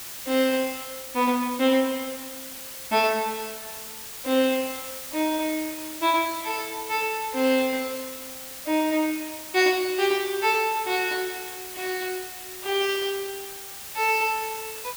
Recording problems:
hiss; slope +1 dB per octave, SNR 10 dB

